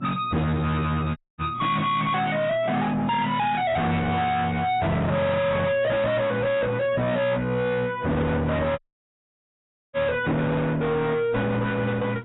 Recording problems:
lossy codec; AAC, log-spectral distance 3 dB, nothing above 3.8 kHz
distortion; soft clipping, signal-to-distortion ratio 5 dB
hum; 60 Hz, harmonics up to 1.1 kHz, SNR 19 dB
audio cutting out; at 1 s and at 9 s for 1 s

